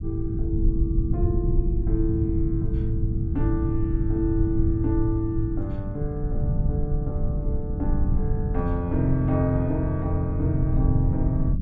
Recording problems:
rumble; below 110 Hz, SNR 0 dB

